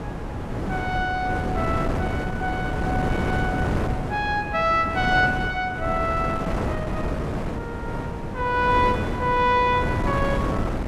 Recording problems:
wind noise; below 530 Hz, SNR 3 dB

